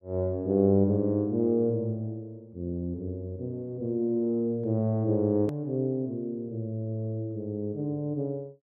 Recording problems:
hard cut with a click; at 5.5 s

